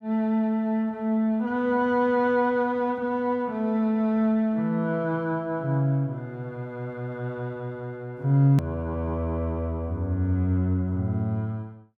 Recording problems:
click at an edit; at 8.5 s

